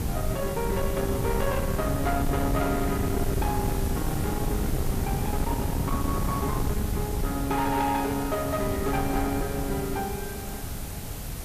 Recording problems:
distortion; soft clipping, signal-to-distortion ratio 11 dB
background hiss; SNR 10 dB
wind on the microphone; below 210 Hz, SNR 2 dB

